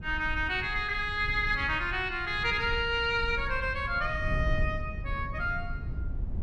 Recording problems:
low-frequency rumble; below 94 Hz, SNR 8 dB

